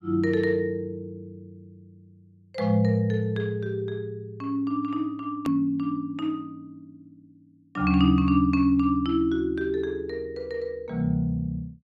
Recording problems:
hard cut with a click; at 5.5 s

